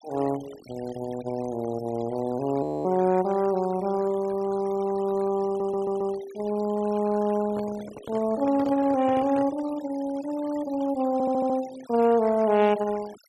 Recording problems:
noise reduction artefacts; signal-to-artefact ratio 20 dB
frozen audio; at 2.5 s
stutter; at 5.5 s and at 11 s
handling noise; from 7.5 to 9.5 s; peak -8 dB vs average level

